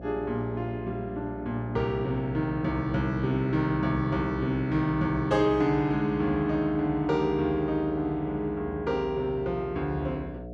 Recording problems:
hum; 60 Hz, harmonics up to 720 Hz, SNR 13 dB

